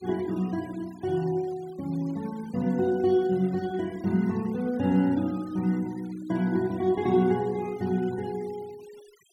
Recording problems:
denoising artefacts; signal-to-artefact ratio 24 dB

